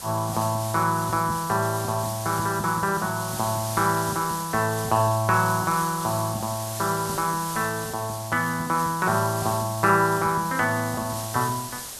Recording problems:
background hiss; SNR 9 dB

